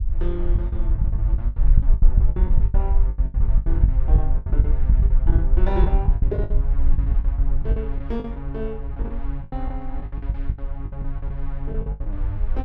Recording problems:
rumble; below 54 Hz, SNR -10 dB
packet loss; 19% of the sound replaced, filled with the last packet

